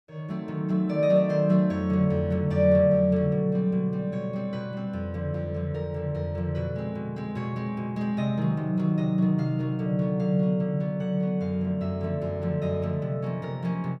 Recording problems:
none

